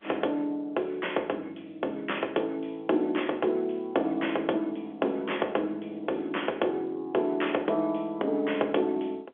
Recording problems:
telephone audio; 280 Hz to 3.4 kHz, G.711

